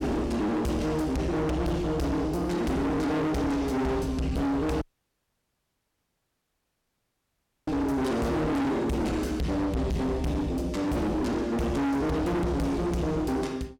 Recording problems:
distorted audio; hard clipping, signal-to-distortion ratio 6 dB
audio cutting out; at 5 s for 3 s

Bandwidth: 17 kHz